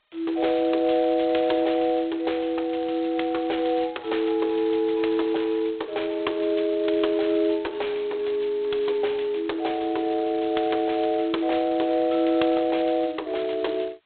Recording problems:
telephone audio; 280 Hz to 4 kHz, G.726

